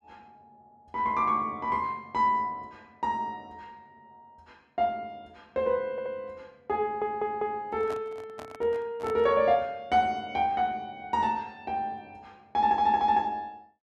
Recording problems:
stutter; at 6 s, at 7 s and at 13 s
handling noise; from 7.5 to 9.5 s; peak -9 dB vs average level

